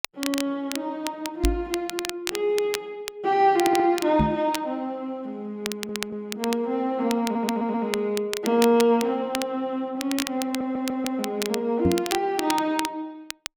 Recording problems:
crackling; vinyl, SNR 9 dB
knock on the microphone; at 1.5 s, at 4 s and at 12 s; peak +6 dB vs average level
audio stuttering; 4 times, first at 3.5 s

